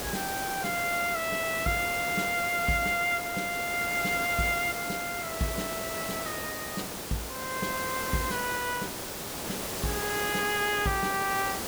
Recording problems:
hiss; slope -4 dB per octave, SNR 4 dB

